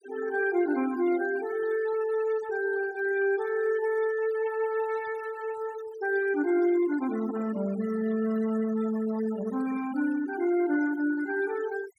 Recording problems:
noise reduction artefacts; signal-to-artefact ratio 16 dB

